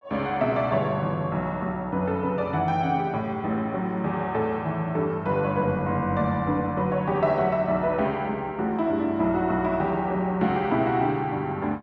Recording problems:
none

